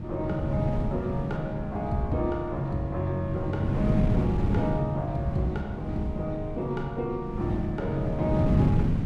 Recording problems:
wind noise; below 220 Hz, SNR 0 dB

